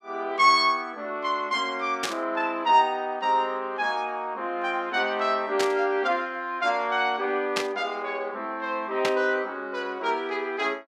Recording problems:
static burst; 4 times, first at 2 s; peak +3 dB vs average level

